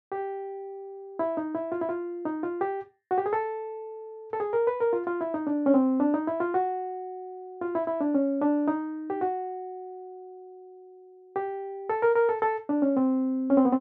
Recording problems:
none

